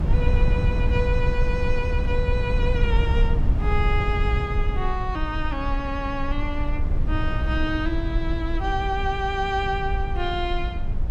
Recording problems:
rumble; below 82 Hz, SNR -2 dB

